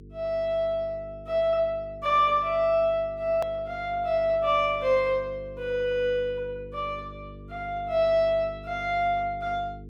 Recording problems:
electrical hum; 50 Hz, harmonics up to 450 Hz, SNR 19 dB
click at an edit; at 3.5 s

